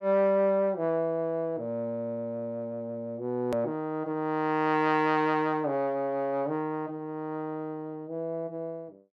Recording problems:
hard cut with a click; at 3.5 s

